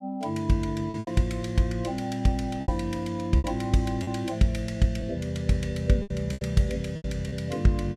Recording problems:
packet loss; 7% of the sound replaced, filled with repeated pitch periods

